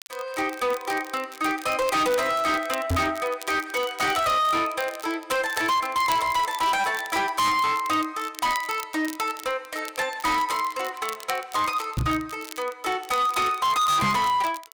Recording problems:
distorted audio; hard clipping, signal-to-distortion ratio 7 dB
crackling; vinyl, SNR 17 dB
microphone thump; at 3 s, at 12 s and at 14 s; peak +3 dB vs average level

